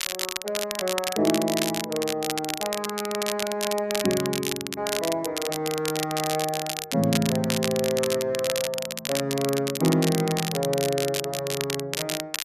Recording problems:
crackle; vinyl, SNR 4 dB

